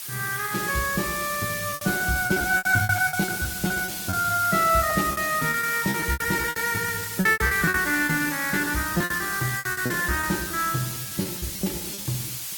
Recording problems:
codec artefacts; Opus, log-spectral distance 9 dB, nothing above 18.3 kHz
hiss; slope +3 dB per octave, SNR 6 dB
packet loss; 17% of the sound replaced, filled with repeated pitch periods

